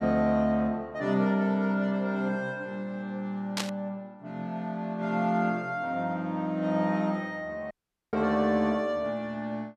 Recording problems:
static burst; at 3.5 s; peak +2 dB vs average level
dropout; at 7.5 s

